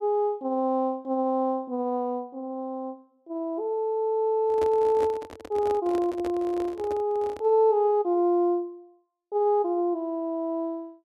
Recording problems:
handling noise; from 4.5 to 7.5 s; peak -6 dB vs average level

